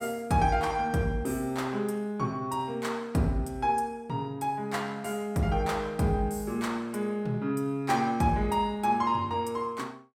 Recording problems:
none

